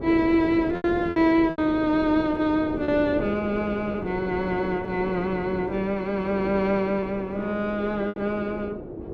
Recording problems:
wind noise; below 450 Hz, SNR 9 dB
lost packets; 4% of the sound replaced, filled with repeated pitch periods

